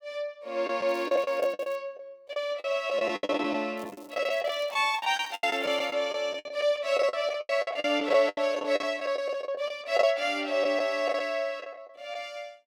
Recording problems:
packet loss; 15% of the sound replaced, filled with the last packet
crackling; at 1 s and from 4 to 6 s; loose cable, SNR 26 dB

